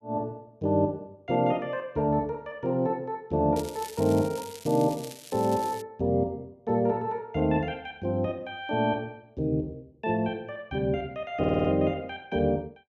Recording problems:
crackle; from 3.5 to 6 s; loose cable, SNR 16 dB
audio stuttering; at 11 s

